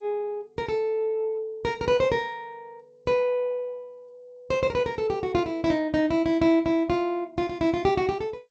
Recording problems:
lossy codec; G.722, then MP2, log-spectral distance 2 dB

